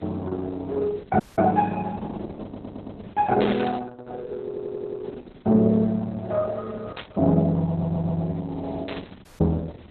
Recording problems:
codec artefacts; Opus, log-spectral distance 4 dB, nothing above 3.9 kHz
hiss; SNR 24 dB
audio cutting out; at 1 s and at 9.5 s
stutter; at 2.5 s, at 4.5 s and at 7.5 s
static burst; at 3.5 s, at 7 s and at 9 s; peak -3 dB vs average level

